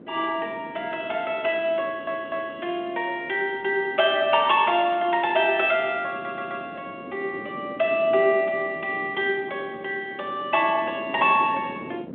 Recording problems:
telephone audio; 260 Hz to 3.5 kHz, G.726
wind on the microphone; below 430 Hz, SNR 18 dB
audio stuttering; at 2 s and at 6 s

